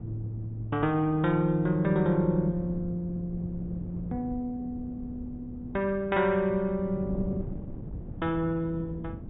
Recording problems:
low-pass filter; nothing above 4 kHz
wind noise; below 220 Hz, SNR 12 dB

